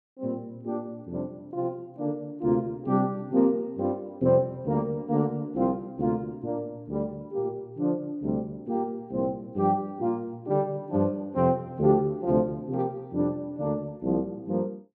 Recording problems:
none

